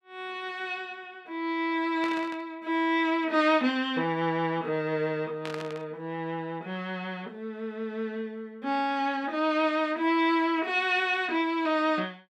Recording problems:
static burst; at 2 s and at 5.5 s; peak -6 dB vs average level

